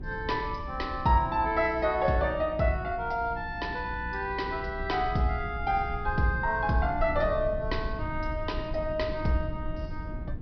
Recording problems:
low-pass filter; nothing above 5.5 kHz
electrical hum; 60 Hz, harmonics up to 360 Hz, SNR 16 dB
low-frequency rumble; below 96 Hz, SNR 11 dB

